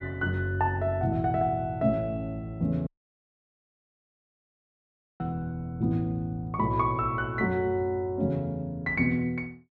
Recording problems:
audio cutting out; at 3 s for 2.5 s

